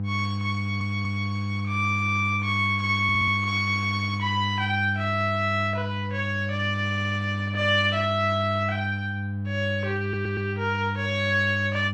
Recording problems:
hum; 50 Hz, harmonics up to 500 Hz, SNR 4 dB
stutter; 4 times, first at 0.5 s

